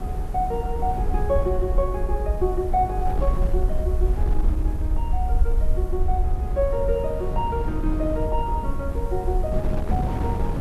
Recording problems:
hiss; slope +6 dB per octave, SNR 27 dB
rumble; below 58 Hz, SNR 0 dB
wind noise; below 220 Hz, SNR 4 dB

